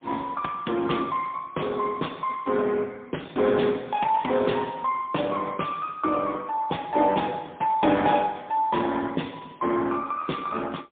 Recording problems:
phone line; 220 Hz to 3.5 kHz, AMR-NB, then MP3

